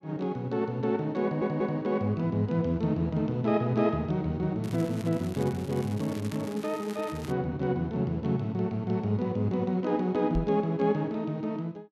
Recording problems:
stutter; at 1 s
crackling; from 4.5 to 7.5 s; loose cable, SNR 19 dB
microphone thump; at 10 s; peak 0 dB vs average level

